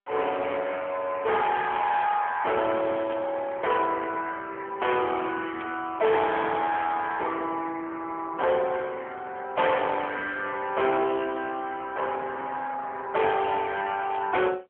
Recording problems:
phone line; 340 Hz to 3.4 kHz, AMR-NB
distortion; hard clipping, signal-to-distortion ratio 9 dB
static burst; at 3 s, at 5.5 s and at 14 s; peak -10 dB vs average level

